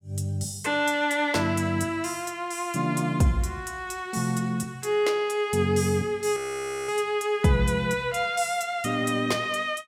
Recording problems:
frozen audio; at 6.5 s for 0.5 s

